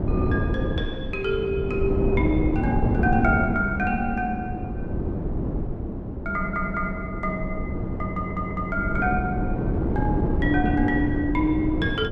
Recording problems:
wind on the microphone; below 320 Hz, SNR 1 dB
stutter; at 6.5 s and at 8 s

